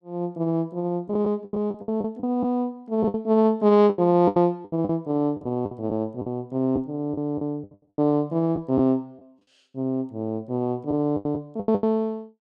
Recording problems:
lost packets; 11% of the sound replaced, filled with the last packet

